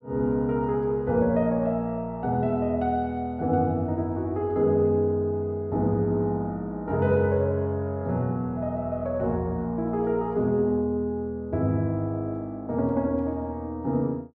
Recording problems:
none

